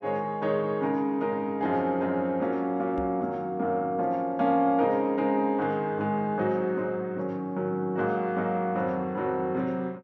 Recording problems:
microphone thump; at 3 s; peak -1 dB vs average level

